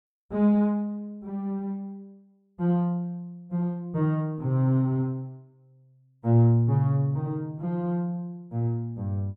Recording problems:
none

